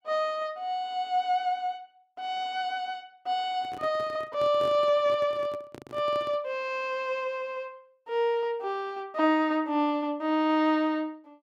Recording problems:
handling noise; from 3.5 to 6.5 s; peak -9 dB vs average level

